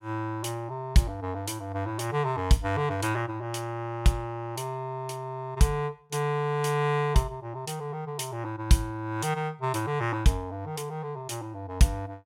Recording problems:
none

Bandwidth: 16 kHz